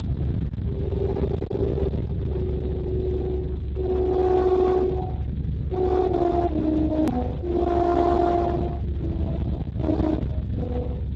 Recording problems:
codec artefacts; Speex, log-spectral distance 2 dB, nothing above 13.1 kHz
distorted audio; hard clipping, uneven, signal-to-distortion ratio 5 dB
electrical hum; 50 Hz, harmonics up to 750 Hz, SNR 18 dB
rumble; below 340 Hz, strongest tone 70 Hz, SNR 4 dB
edit click; at 7 s

